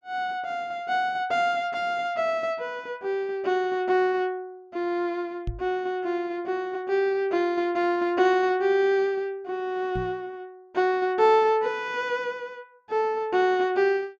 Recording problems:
knock on the microphone; at 5.5 s and at 10 s; peak -2 dB vs average level

